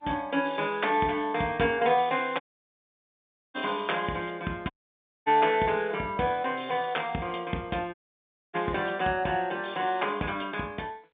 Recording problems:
phone line; 150 Hz to 3.6 kHz, G.711
audio cutting out; at 2.5 s for 1 s, at 4.5 s for 0.5 s and at 8 s for 0.5 s

